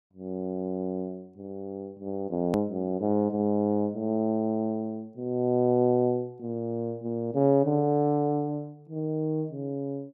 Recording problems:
hard cut with a click; at 2.5 s

